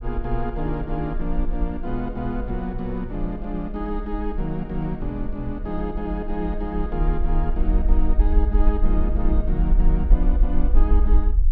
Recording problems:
low-frequency rumble; below 46 Hz, strongest tone 20 Hz, SNR -3 dB

